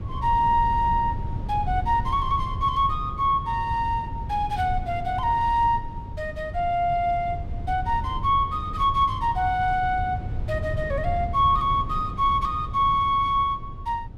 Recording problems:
low-frequency rumble; below 120 Hz, SNR 9 dB

